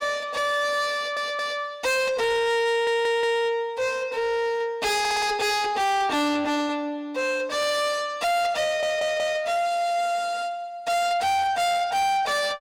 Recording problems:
distortion; soft clipping, signal-to-distortion ratio 8 dB
stutter; 4 times, first at 1 s

